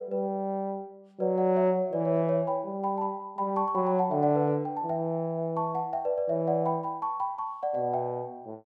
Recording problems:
none

